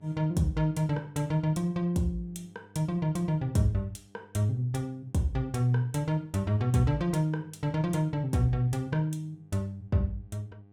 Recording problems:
hum; 50 Hz, harmonics up to 800 Hz, SNR 28 dB

